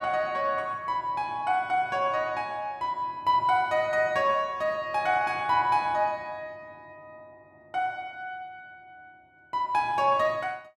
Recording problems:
none

